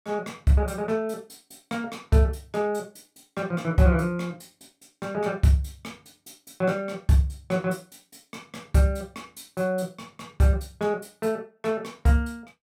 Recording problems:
none

